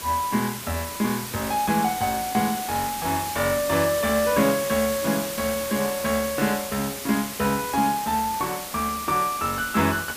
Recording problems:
hiss; slope -1 dB per octave, SNR 7 dB

